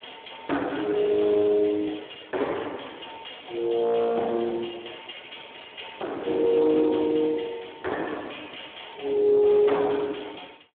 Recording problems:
phone line; 240 Hz to 3.6 kHz, Speex
distorted audio; hard clipping, uneven, signal-to-distortion ratio 11 dB

